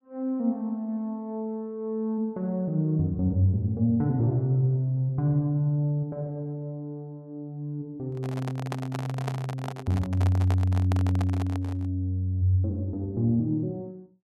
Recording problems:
handling noise; from 8 to 12 s; peak -3 dB vs average level

